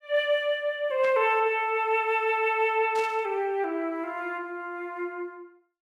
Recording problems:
static burst; at 1 s and at 3 s; peak -10 dB vs average level

